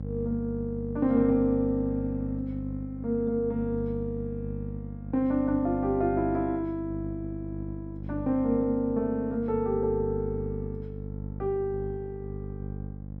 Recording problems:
hum; 50 Hz, harmonics up to 550 Hz, SNR 8 dB

